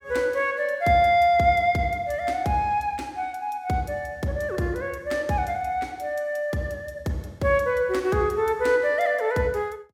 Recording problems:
none

